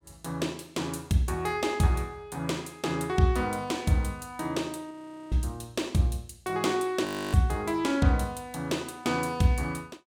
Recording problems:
audio freezing; at 5 s and at 7 s

